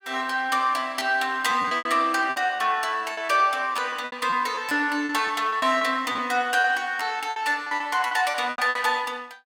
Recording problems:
lost packets; 12% of the sound replaced, filled with repeated pitch periods

